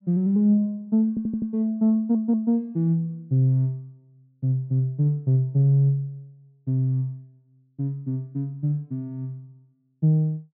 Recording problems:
treble missing; nothing above 4.7 kHz
stutter; at 1 s and at 2 s

